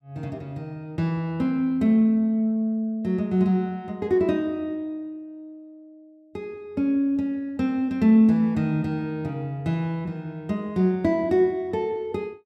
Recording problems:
none

